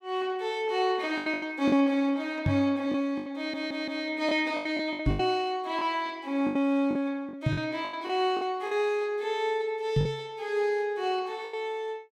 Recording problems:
packet loss; 9% of the sound replaced, filled with the last packet
microphone bump; 4 times, first at 2.5 s; peak +6 dB vs average level
audio stuttering; at 3.5 s

